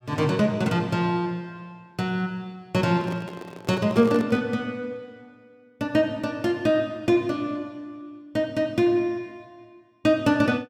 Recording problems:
microphone handling noise; from 3 to 4.5 s; peak -4 dB vs average level

